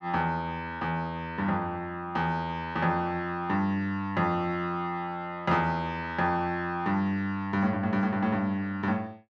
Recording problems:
none

